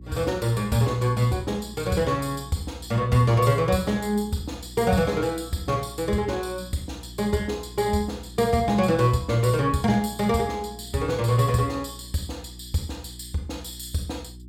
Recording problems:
electrical hum; 60 Hz, harmonics up to 360 Hz, SNR 18 dB

